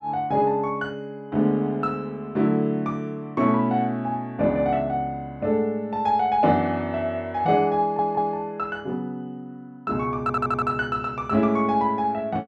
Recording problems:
audio stuttering; at 8 s and at 10 s

